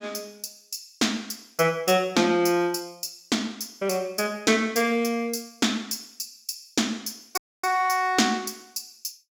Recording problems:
dropout; at 7.5 s

